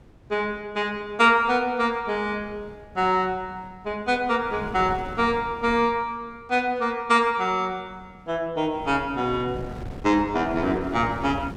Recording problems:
wind noise; below 370 Hz, SNR 17 dB

